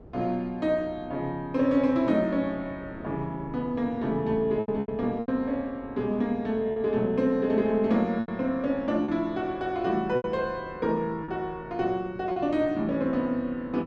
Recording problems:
wind noise; below 410 Hz, SNR 20 dB
lost packets; 4% of the sound replaced, filled with repeated pitch periods

